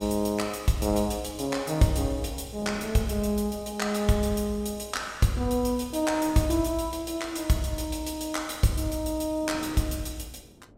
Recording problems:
wind noise; below 450 Hz, SNR 22 dB

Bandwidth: 16 kHz